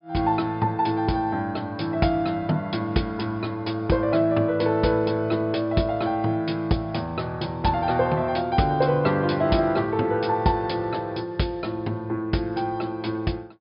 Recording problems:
low-pass filter; nothing above 5.5 kHz

